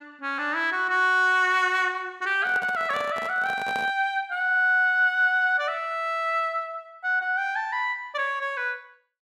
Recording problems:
microphone handling noise; from 2.5 to 4 s; peak -8 dB vs average level

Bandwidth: 14.5 kHz